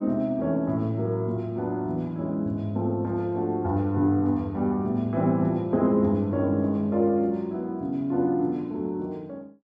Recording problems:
none

